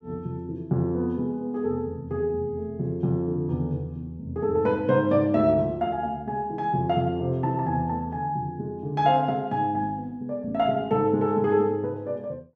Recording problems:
none

